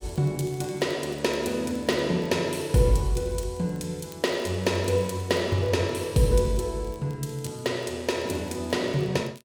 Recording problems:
crackle; vinyl, SNR 28 dB

